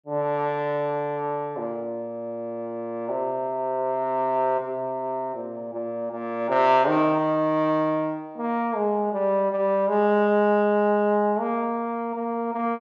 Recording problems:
low-pass filter; nothing above 8 kHz

